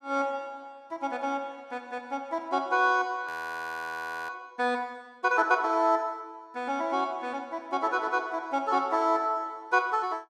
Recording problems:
frozen audio; at 3.5 s for 1 s

